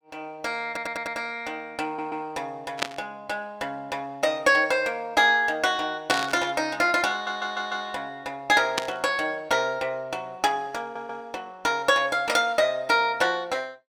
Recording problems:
stutter; 4 times, first at 0.5 s
burst of static; at 3 s, at 6 s and at 9 s; peak +4 dB vs average level

